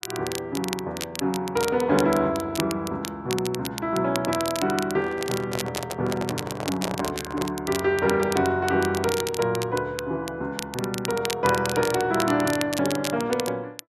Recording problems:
crackle; vinyl, SNR 9 dB
microphone handling noise; from 5 to 7.5 s; peak -1 dB vs average level

